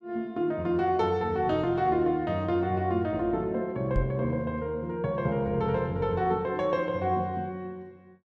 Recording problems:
microphone bump; at 4 s; peak +1 dB vs average level

